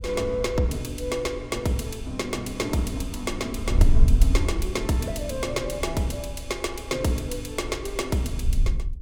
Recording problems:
wind noise; below 58 Hz, SNR 1 dB

